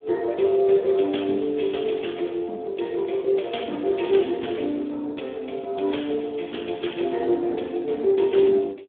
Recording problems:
phone line; 240 Hz to 3.5 kHz, Speex

